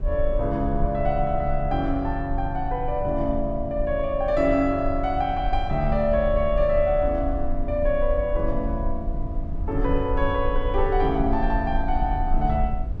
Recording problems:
rumble; below 48 Hz, SNR 6 dB

